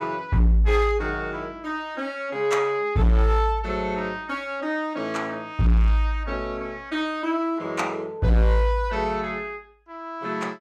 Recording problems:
distortion; hard clipping, signal-to-distortion ratio 10 dB

